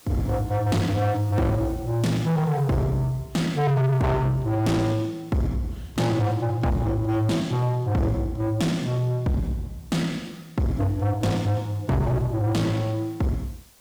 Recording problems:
distorted audio; soft clipping, signal-to-distortion ratio 6 dB
hiss; slope -1 dB per octave, SNR 28 dB

